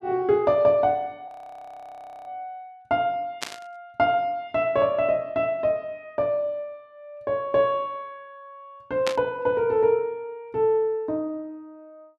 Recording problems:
audio freezing; at 1.5 s for 1 s
burst of static; at 3.5 s and at 9 s; peak -1 dB vs average level

